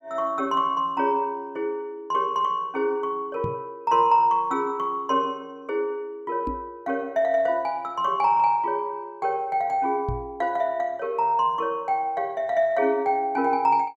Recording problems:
microphone bump; at 3.5 s, at 6.5 s and at 10 s; peak -2 dB vs average level

